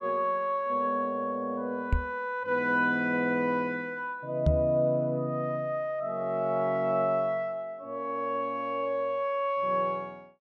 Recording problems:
knock on the microphone; at 2 s and at 4.5 s; peak +7 dB vs average level

